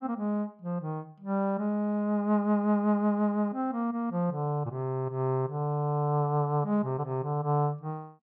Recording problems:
none

